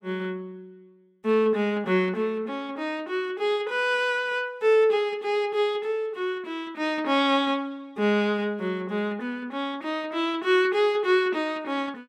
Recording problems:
none

